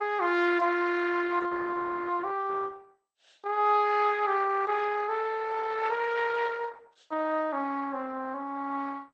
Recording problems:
codec artefacts; Opus, then MP2, log-spectral distance 4 dB

